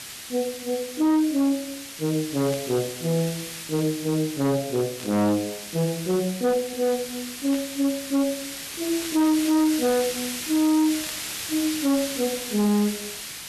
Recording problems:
distorted audio; hard clipping, signal-to-distortion ratio 11 dB
background hiss; SNR 8 dB
burst of static; 5 times, first at 2.5 s; peak -11 dB vs average level

